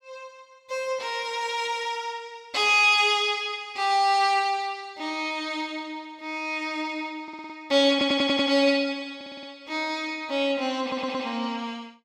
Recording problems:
audio stuttering; 4 times, first at 7 s

